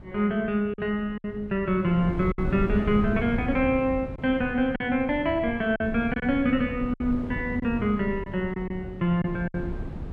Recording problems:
wind on the microphone; below 220 Hz, SNR 9 dB
packet loss; 5% of the sound replaced, filled with silence

